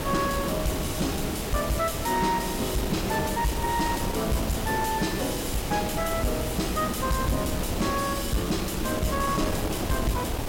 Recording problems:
distortion; soft clipping, signal-to-distortion ratio 10 dB
background hiss; slope -1 dB per octave, SNR 9 dB
wind on the microphone; below 540 Hz, SNR 5 dB

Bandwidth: 16.5 kHz